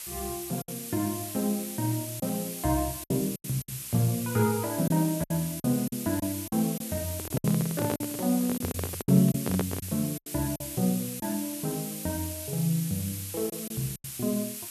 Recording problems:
background hiss; slope +3 dB per octave, SNR 7 dB
packet loss; 7% of the sound replaced, filled with silence
handling noise; from 7 to 10 s; peak +4 dB vs average level

